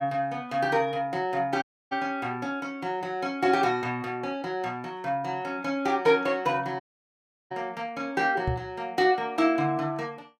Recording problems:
audio cutting out; at 1.5 s and at 7 s for 0.5 s
microphone bump; at 8.5 s; peak +2 dB vs average level

